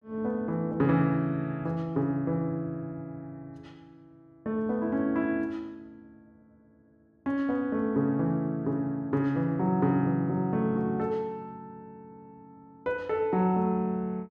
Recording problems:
none

